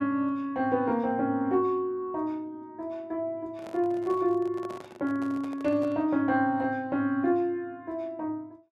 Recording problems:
handling noise; from 3.5 to 6 s; peak -10 dB vs average level

